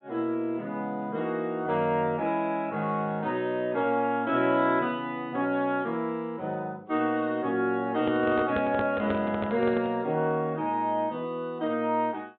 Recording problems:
treble missing; nothing above 4 kHz
microphone handling noise; from 8 to 10 s; peak -1 dB vs average level

